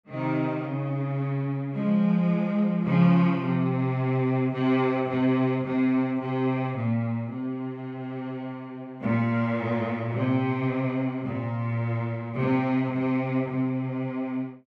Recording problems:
none

